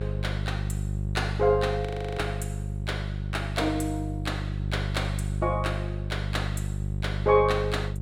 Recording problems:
electrical hum; 50 Hz, harmonics up to 550 Hz, SNR 2 dB
audio freezing; at 2 s

